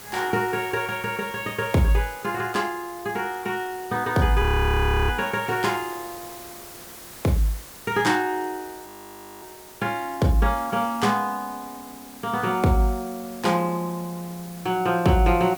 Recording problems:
hiss; slope -2 dB per octave, SNR 17 dB
frozen audio; at 4.5 s for 0.5 s and at 9 s for 0.5 s

